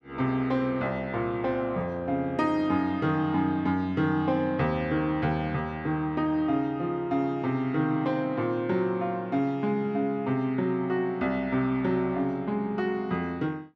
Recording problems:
none

